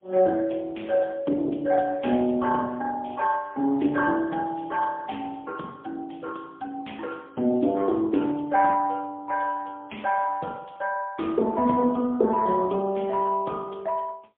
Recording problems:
phone line; 220 Hz to 2.1 kHz, AMR-NB, then MP3

